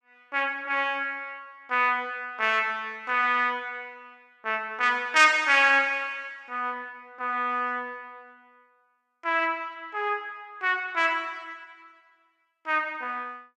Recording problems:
none

